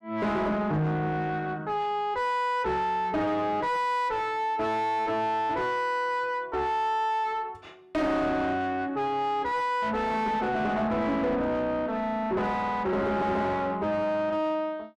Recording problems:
distorted audio; soft clipping, signal-to-distortion ratio 7 dB

